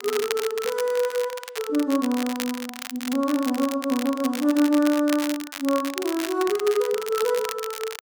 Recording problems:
crackle; vinyl, SNR 10 dB

